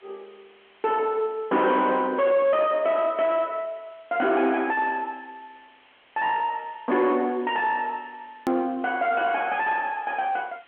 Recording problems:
telephone audio; 220 Hz to 3.5 kHz, G.711
distorted audio; soft clipping, signal-to-distortion ratio 5 dB
background hiss; SNR 30 dB
click at an edit; at 8.5 s

